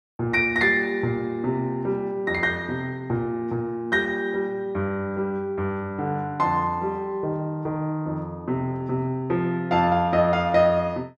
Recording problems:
none

